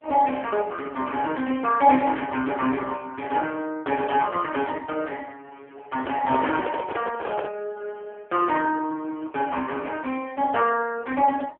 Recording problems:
telephone audio; 240 Hz to 2.3 kHz, AMR-NB
handling noise; from 6 to 7.5 s; peak -1 dB vs average level

